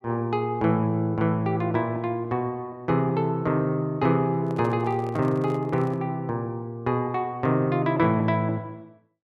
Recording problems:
microphone handling noise; from 4.5 to 6 s; peak -10 dB vs average level

